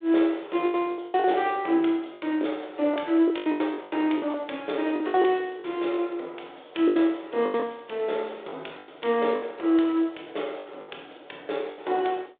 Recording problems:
phone line; 300 Hz to 3.7 kHz, G.726
lost packets; 12% of the sound replaced, filled with the last packet

